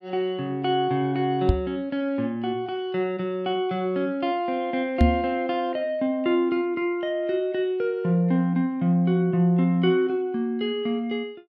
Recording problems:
knock on the microphone; at 1.5 s and at 5 s; peak +9 dB vs average level

